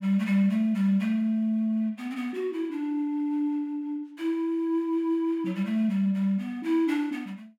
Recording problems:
none

